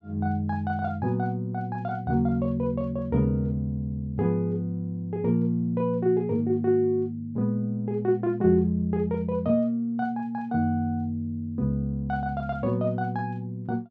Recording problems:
none

